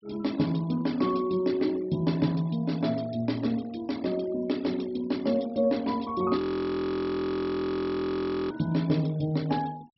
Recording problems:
treble missing; nothing above 5.6 kHz
noise reduction artefacts; signal-to-artefact ratio 23 dB
frozen audio; at 6.5 s for 2 s

